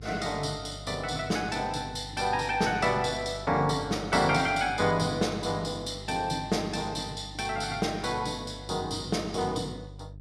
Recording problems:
hum; 50 Hz, harmonics up to 450 Hz, SNR 16 dB

